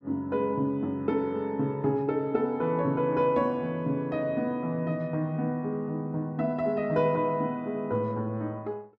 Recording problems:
none

